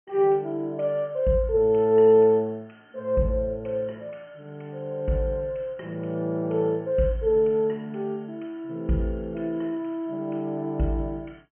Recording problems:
treble cut off; nothing above 3.1 kHz

